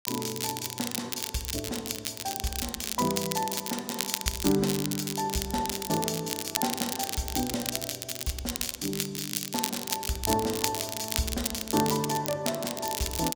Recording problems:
crackling; vinyl, SNR 1 dB

